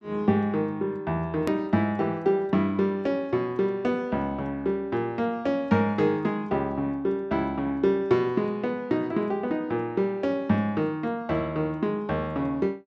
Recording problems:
hard cut with a click; at 1.5 s

